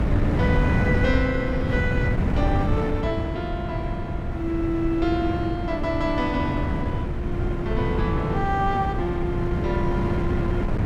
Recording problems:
wind noise; below 220 Hz, SNR -1 dB

